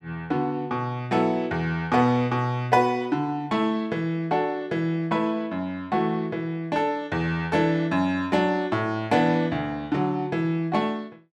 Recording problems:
none

